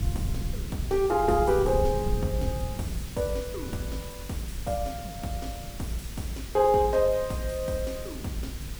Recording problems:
hum; 50 Hz, harmonics up to 550 Hz, SNR 17 dB
hiss; slope +1 dB per octave, SNR 15 dB
rumble; below 130 Hz, SNR 9 dB

